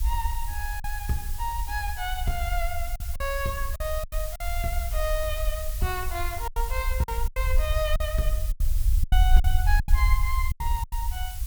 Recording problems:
background hiss; slope +4 dB per octave, SNR 7 dB
rumble; below 60 Hz, SNR -2 dB
packet loss; 9% of the sound replaced, filled with silence

